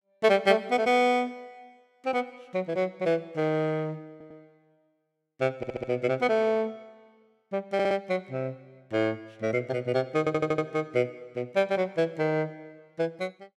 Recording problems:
audio stuttering; 4 times, first at 4 s

